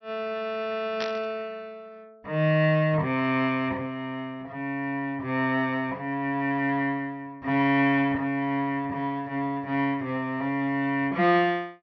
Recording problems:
treble missing; nothing above 5.8 kHz
burst of static; at 1 s; peak -3 dB vs average level

